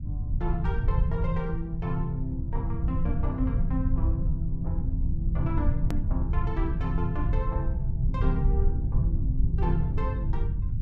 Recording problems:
low-frequency rumble; below 92 Hz, SNR -4 dB
hard cut with a click; at 6 s

